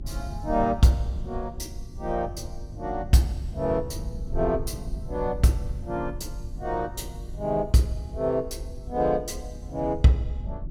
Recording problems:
electrical hum; 50 Hz, harmonics up to 350 Hz, SNR 23 dB
low-frequency rumble; below 86 Hz, SNR 11 dB

